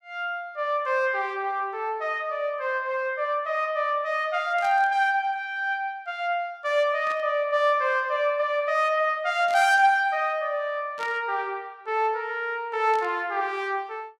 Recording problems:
burst of static; 5 times, first at 4.5 s; peak -11 dB vs average level

